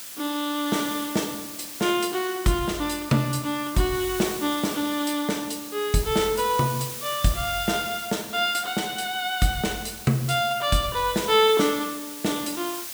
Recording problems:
background hiss; slope +2 dB per octave, SNR 10 dB

